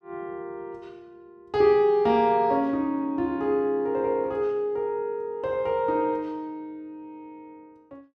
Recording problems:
none

